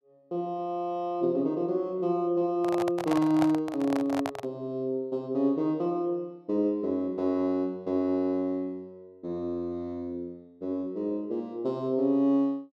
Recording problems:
handling noise; from 2.5 to 4.5 s; peak +1 dB vs average level

